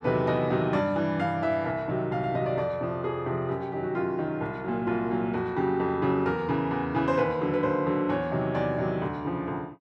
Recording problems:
none

